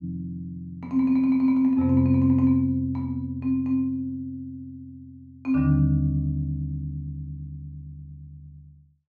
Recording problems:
none

